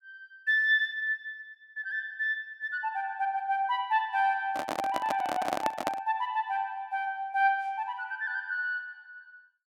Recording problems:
handling noise; from 4.5 to 6 s; peak +3 dB vs average level

